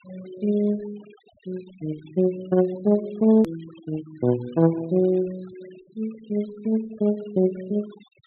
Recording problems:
treble cut off; nothing above 4 kHz
denoising artefacts; signal-to-artefact ratio 25 dB
edit click; at 3.5 s

